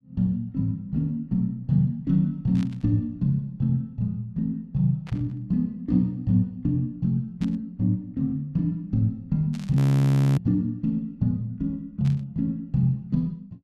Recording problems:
burst of static; 5 times, first at 2.5 s; peak -14 dB vs average level
audio freezing; at 10 s for 0.5 s

